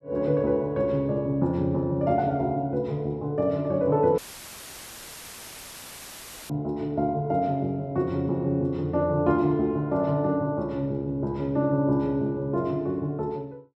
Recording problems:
audio cutting out; at 4 s for 2.5 s; filled with static

